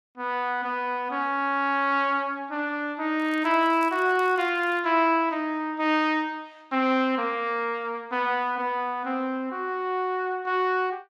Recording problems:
crackle; from 3 to 5 s; loose cable, SNR 28 dB

